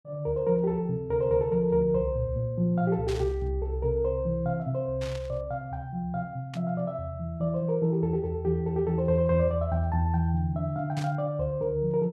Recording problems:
burst of static; 4 times, first at 3 s; peak -9 dB vs average level

